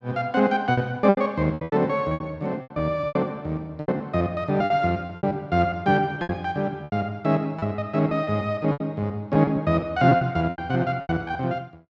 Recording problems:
lost packets; 14% of the sound replaced, filled with repeated pitch periods

